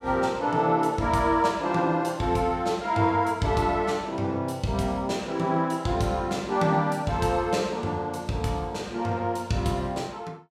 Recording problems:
none

